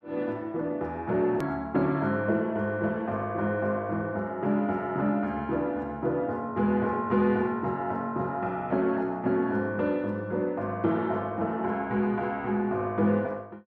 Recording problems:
edit click; at 1.5 s

